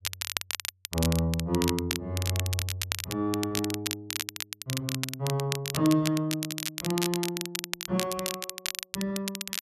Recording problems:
crackle; vinyl, SNR 3 dB

